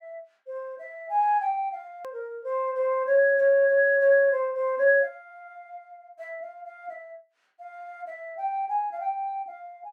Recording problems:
hard cut with a click; at 2 s

